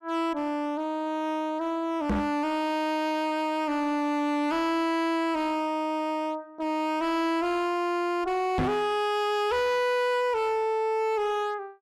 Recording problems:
distortion; hard clipping, signal-to-distortion ratio 6 dB
knock on the microphone; at 2 s and at 8.5 s; peak +4 dB vs average level

